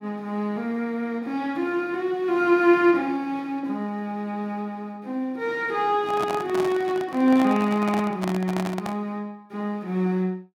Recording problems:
microphone handling noise; from 6 to 9 s; peak -2 dB vs average level

